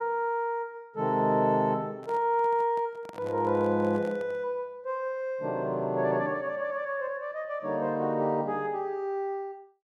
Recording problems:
handling noise; from 2 to 4.5 s; peak -11 dB vs average level

